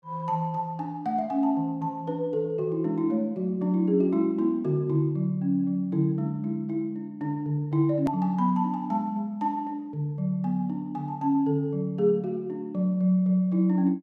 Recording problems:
edit click; at 8 s

